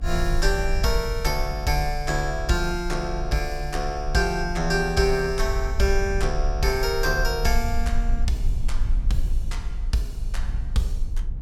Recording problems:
low-frequency rumble; below 50 Hz, SNR 4 dB

